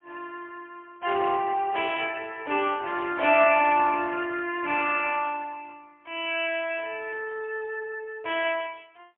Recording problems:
phone line; 300 Hz to 3.2 kHz, AMR-NB, then MP3

